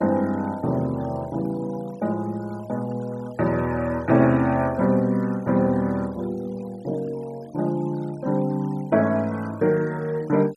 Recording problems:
noise reduction artefacts; signal-to-artefact ratio 24 dB

